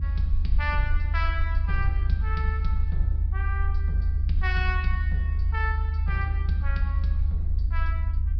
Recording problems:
low-pass filter; nothing above 5.5 kHz
hum; 50 Hz, harmonics up to 300 Hz, SNR 15 dB
rumble; below 76 Hz, SNR -7 dB

